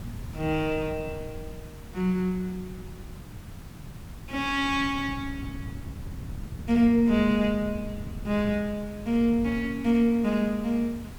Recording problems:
background hiss; slope -4 dB per octave, SNR 23 dB
wind noise; below 160 Hz, SNR 15 dB

